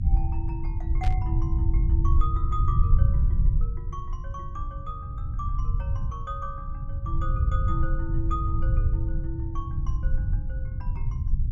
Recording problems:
hum; 60 Hz, harmonics up to 300 Hz, SNR 16 dB
rumble; below 86 Hz, SNR -10 dB
burst of static; at 1 s; peak 0 dB vs average level

